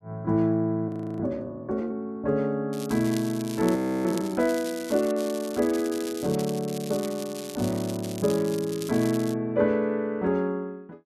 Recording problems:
audio freezing; at 1 s and at 4 s
crackling; from 2.5 to 5 s and from 5 to 9.5 s; loose cable, SNR 14 dB

